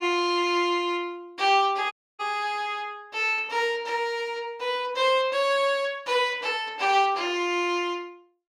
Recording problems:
dropout; at 2 s

